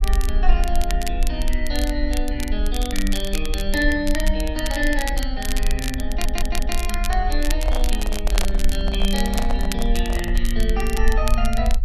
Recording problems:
low-frequency rumble; below 44 Hz, strongest tone 18 Hz, SNR -1 dB
crackle; vinyl, SNR 7 dB
stutter; at 6 s
handling noise; from 7.5 to 10 s; peak 0 dB vs average level

